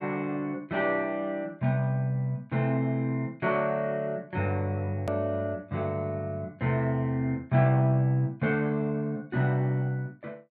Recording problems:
edit click; at 5 s

